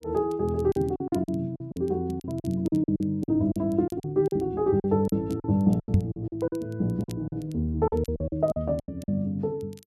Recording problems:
crackle; vinyl, SNR 29 dB
lost packets; 14% of the sound replaced, filled with silence
microphone bump; at 6 s; peak +10 dB vs average level

